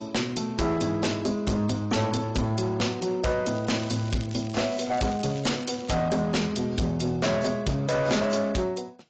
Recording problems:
lossy compression; AAC, log-spectral distance 5 dB, nothing above 7.6 kHz
distorted audio; hard clipping, uneven, signal-to-distortion ratio 7 dB
crackle; from 3.5 to 6 s; loose cable, SNR 18 dB

